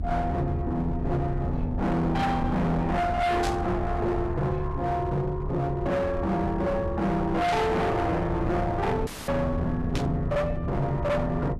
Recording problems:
distorted audio; hard clipping, uneven, signal-to-distortion ratio 7 dB
rumble; below 140 Hz, SNR 7 dB
static burst; at 3.5 s, at 7.5 s and at 10 s; peak -4 dB vs average level
audio cutting out; at 9 s

